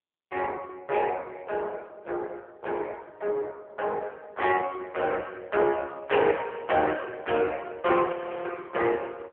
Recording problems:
phone line; 320 Hz to 3.3 kHz, AMR-NB
audio freezing; at 8 s

